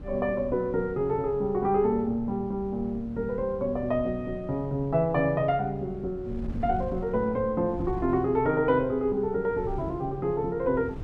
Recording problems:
wind on the microphone; below 150 Hz, SNR 14 dB

